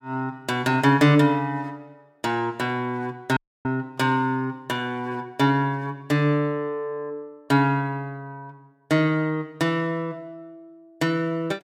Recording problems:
audio cutting out; at 3.5 s

